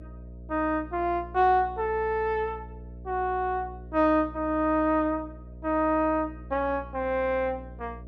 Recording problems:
hum; 60 Hz, harmonics up to 660 Hz, SNR 17 dB

